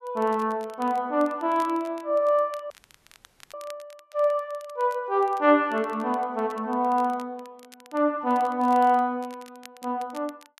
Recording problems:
crackling; vinyl, SNR 27 dB
audio cutting out; at 2.5 s for 1 s

